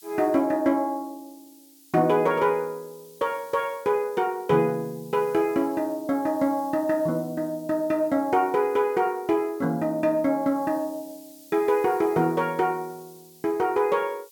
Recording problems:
hiss; slope +6 dB per octave, SNR 25 dB

